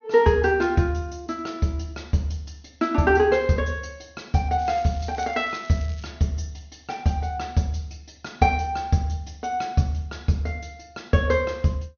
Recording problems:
treble missing; nothing above 6.5 kHz
crackling; from 4.5 to 6 s; loose cable, SNR 23 dB

